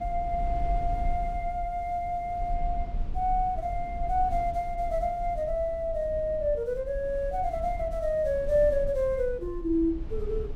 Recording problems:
rumble; below 52 Hz, SNR 9 dB

